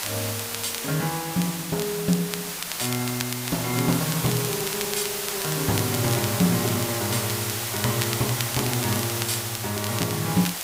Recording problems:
hiss; slope 0 dB per octave, SNR 1 dB
crackle; vinyl, SNR 9 dB

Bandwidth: 15.5 kHz